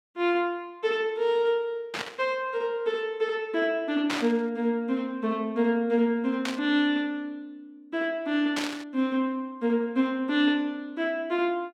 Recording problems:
static burst; 4 times, first at 2 s; peak 0 dB vs average level

